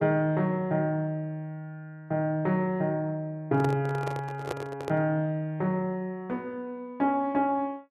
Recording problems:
microphone handling noise; from 3.5 to 5 s; peak 0 dB vs average level

